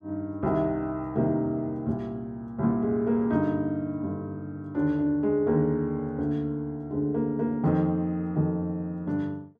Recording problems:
none

